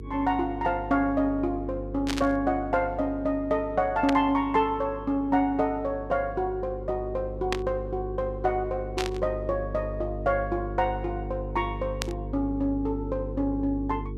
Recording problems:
mains hum; 50 Hz, harmonics up to 450 Hz, SNR 10 dB
static burst; 5 times, first at 2 s; peak +2 dB vs average level

